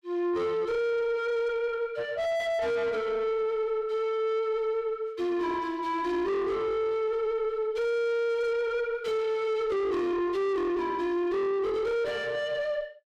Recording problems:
distortion; soft clipping, signal-to-distortion ratio 6 dB

